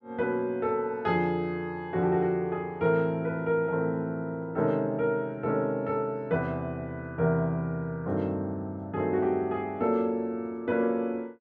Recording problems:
none

